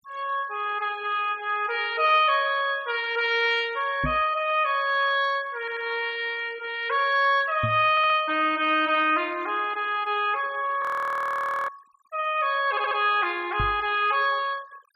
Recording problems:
noise reduction artefacts; signal-to-artefact ratio 24 dB
knock on the microphone; at 4 s, at 7.5 s and at 14 s; peak -1 dB vs average level
stutter; at 5.5 s, at 8 s and at 13 s
frozen audio; at 11 s for 1 s

